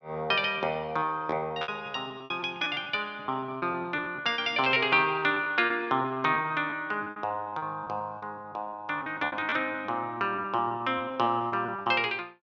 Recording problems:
lost packets; 16% of the sound replaced, filled with repeated pitch periods

